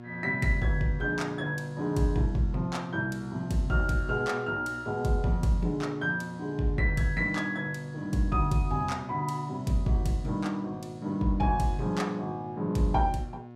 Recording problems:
electrical hum; 60 Hz, harmonics up to 1.4 kHz, SNR 16 dB

